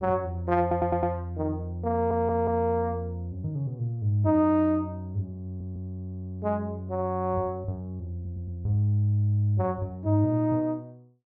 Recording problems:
stutter; 4 times, first at 0.5 s

